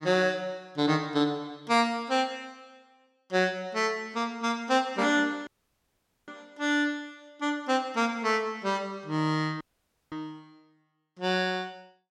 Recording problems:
audio cutting out; at 5.5 s for 1 s and at 9.5 s for 0.5 s

